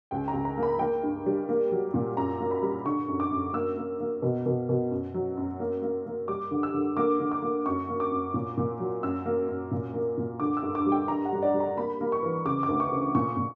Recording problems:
none

